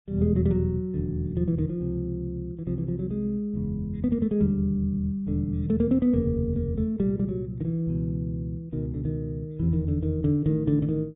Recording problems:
treble cut off; nothing above 4 kHz

